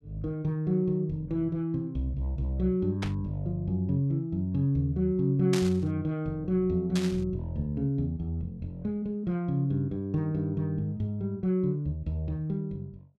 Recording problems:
static burst; at 3 s, at 5.5 s and at 7 s; peak 0 dB vs average level

